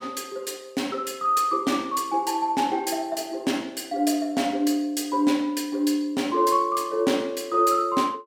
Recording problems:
none

